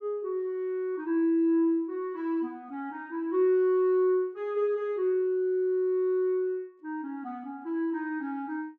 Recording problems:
none

